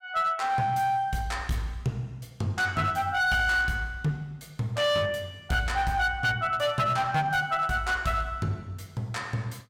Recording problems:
distorted audio; hard clipping, uneven, signal-to-distortion ratio 12 dB

